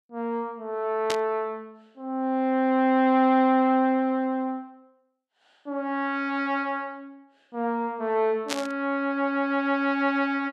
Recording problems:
burst of static; at 1 s and at 8.5 s; peak +1 dB vs average level

